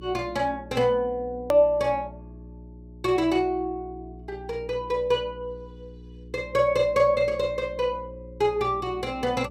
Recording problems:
hum; 60 Hz, harmonics up to 420 Hz, SNR 19 dB
edit click; at 1.5 s

